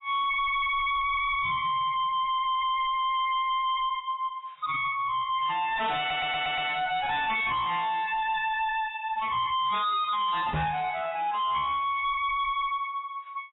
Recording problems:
lossy compression; AAC, then MP3, log-spectral distance 3 dB, nothing above 3.2 kHz
distortion; hard clipping, signal-to-distortion ratio 5 dB
stutter; at 6 s
microphone thump; at 11 s; peak +1 dB vs average level

